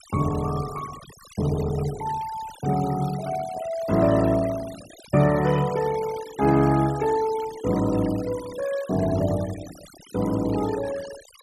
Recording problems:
denoising artefacts; signal-to-artefact ratio 17 dB

